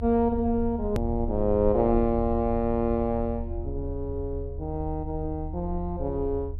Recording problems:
low-pass filter; nothing above 4.7 kHz
low-frequency rumble; below 80 Hz, SNR 8 dB
hard cut with a click; at 1 s

